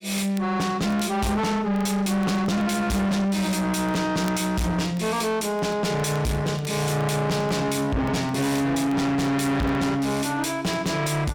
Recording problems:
distorted audio; soft clipping, signal-to-distortion ratio 6 dB
crackle; vinyl, SNR 27 dB

